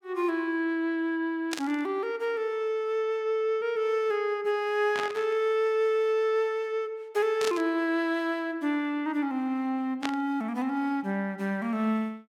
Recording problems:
static burst; 4 times, first at 1.5 s; peak 0 dB vs average level

